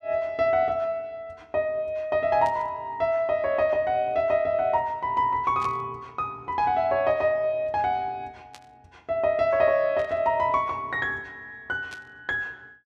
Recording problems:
burst of static; 5 times, first at 2.5 s; peak -13 dB vs average level

